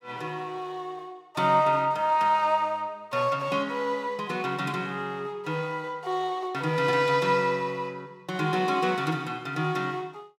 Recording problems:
none

